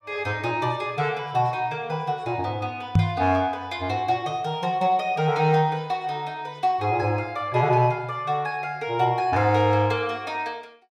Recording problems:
microphone bump; at 3 s; peak +9 dB vs average level

